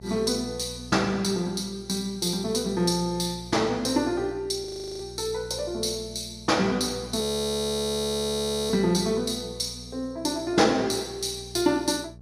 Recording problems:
hum; 60 Hz, harmonics up to 660 Hz, SNR 18 dB
frozen audio; at 4.5 s and at 7 s for 1.5 s

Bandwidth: 15.5 kHz